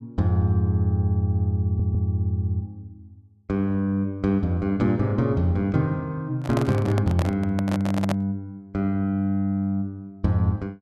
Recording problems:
stutter; at 1.5 s
handling noise; from 6.5 to 8 s; peak 0 dB vs average level

